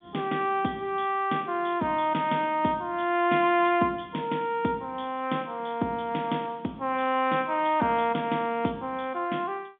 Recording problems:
telephone audio; 170 Hz to 3.6 kHz, G.711

